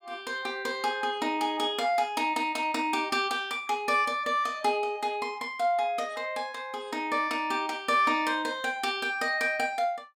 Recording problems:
none

